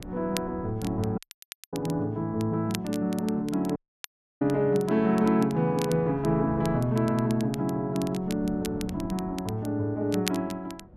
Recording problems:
wind on the microphone; below 260 Hz, SNR 19 dB
crackling; vinyl, SNR 16 dB
audio cutting out; at 1 s for 0.5 s and at 4 s for 0.5 s

